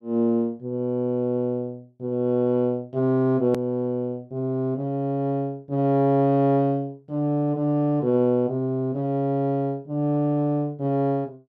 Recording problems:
edit click; at 3.5 s

